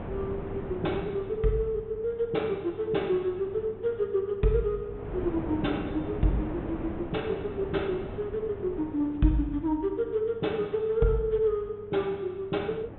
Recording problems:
treble missing; nothing above 3.7 kHz
electrical hum; 50 Hz, harmonics up to 800 Hz, SNR 21 dB
wind noise; below 490 Hz, SNR 10 dB

